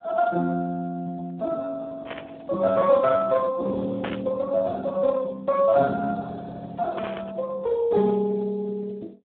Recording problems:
telephone audio; 300 Hz to 2 kHz, Speex
static burst; at 2 s, at 4 s and at 7 s; peak -8 dB vs average level

